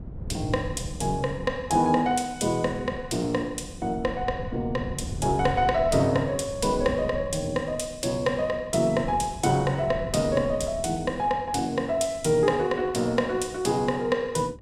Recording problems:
wind noise; below 180 Hz, SNR 13 dB

